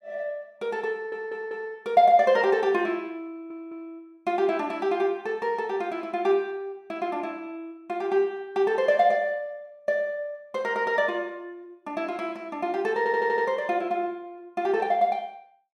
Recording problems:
audio stuttering; at 1 s, at 3.5 s and at 13 s

